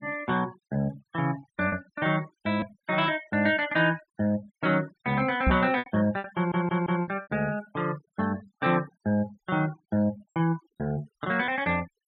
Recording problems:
noise reduction artefacts; signal-to-artefact ratio 22 dB
packet loss; 4% of the sound replaced, filled with repeated pitch periods
knock on the microphone; at 5.5 s; peak +6 dB vs average level
stutter; at 6.5 s

